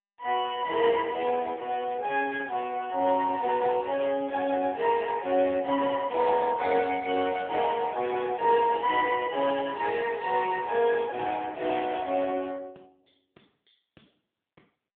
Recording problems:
telephone audio; 190 Hz to 3.3 kHz, AMR-NB

